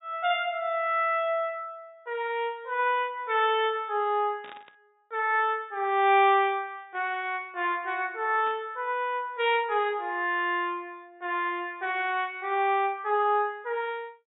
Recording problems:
low-pass filter; nothing above 4 kHz
static burst; at 4.5 s and at 8.5 s; peak -15 dB vs average level

